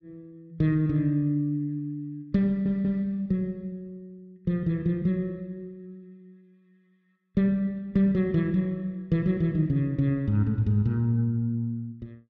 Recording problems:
stutter; at 2.5 s

